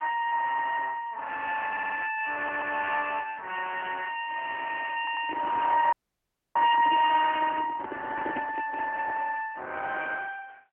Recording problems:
phone line; 410 Hz to 3.5 kHz, AMR-NB
stutter; at 1.5 s, at 2.5 s and at 5 s
handling noise; from 5 to 9 s; peak -4 dB vs average level
dropout; at 6 s for 0.5 s

